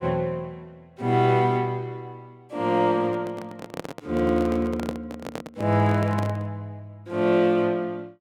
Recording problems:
handling noise; from 3 to 6.5 s; peak -3 dB vs average level

